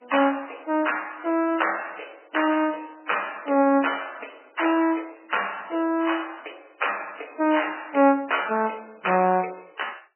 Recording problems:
lossy compression; MP3, log-spectral distance 9 dB, nothing above 3 kHz

